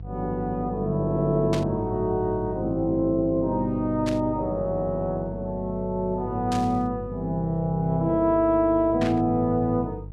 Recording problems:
electrical hum; 50 Hz, harmonics up to 350 Hz, SNR 13 dB
burst of static; 4 times, first at 1.5 s; peak -5 dB vs average level

